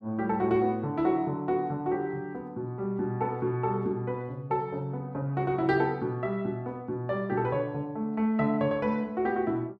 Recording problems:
none

